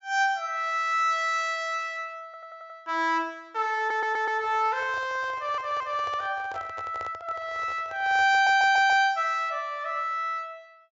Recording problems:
low-pass filter; nothing above 8 kHz
audio stuttering; 4 times, first at 2.5 s
microphone handling noise; from 4 to 9 s; peak -12 dB vs average level

